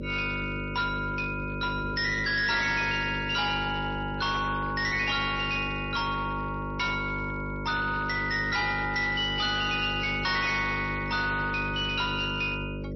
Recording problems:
lossy compression; MP3, log-spectral distance 4 dB, nothing above 5.5 kHz
distorted audio; hard clipping, signal-to-distortion ratio 11 dB
electrical hum; 50 Hz, harmonics up to 600 Hz, SNR 8 dB

